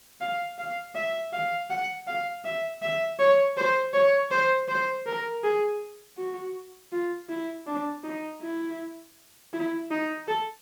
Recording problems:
hiss; slope 0 dB per octave, SNR 26 dB

